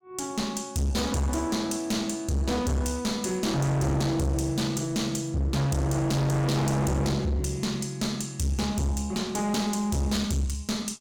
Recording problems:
distorted audio; hard clipping, uneven, signal-to-distortion ratio 4 dB

